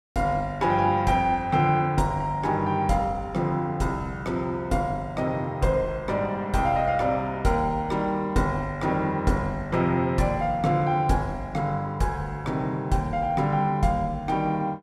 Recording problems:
none

